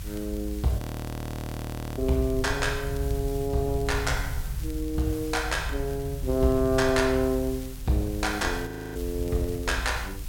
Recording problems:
background hiss; slope 0 dB per octave, SNR 17 dB
low-frequency rumble; below 86 Hz, SNR 7 dB
crackling; vinyl, SNR 26 dB
audio freezing; at 1 s for 1 s and at 8.5 s

